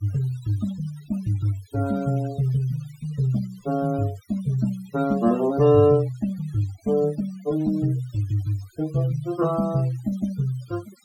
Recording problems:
noise reduction artefacts; signal-to-artefact ratio 22 dB

